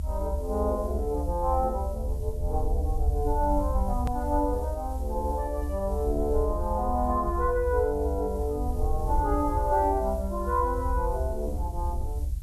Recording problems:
background hiss; SNR 24 dB
rumble; below 70 Hz, SNR 3 dB
edit click; at 4 s

